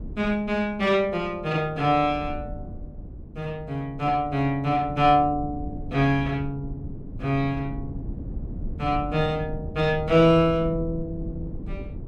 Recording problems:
wind noise; below 170 Hz, SNR 13 dB

